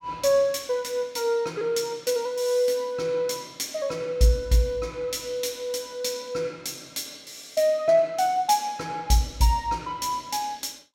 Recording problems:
none

